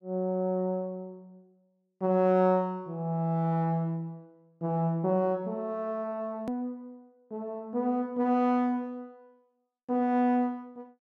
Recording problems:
click at an edit; at 6.5 s

